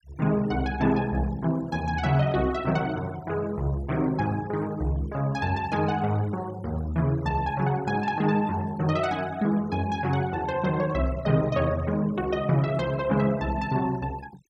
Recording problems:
noise reduction artefacts; signal-to-artefact ratio 21 dB

